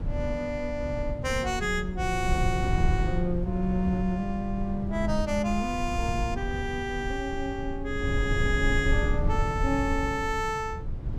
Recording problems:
rumble; below 110 Hz, SNR 3 dB

